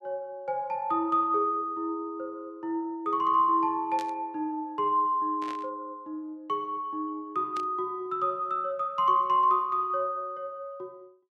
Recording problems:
static burst; at 4 s, at 5.5 s and at 7.5 s; peak -10 dB vs average level

